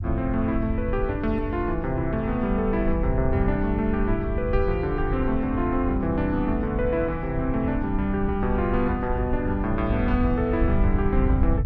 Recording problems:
rumble; below 88 Hz, SNR 4 dB

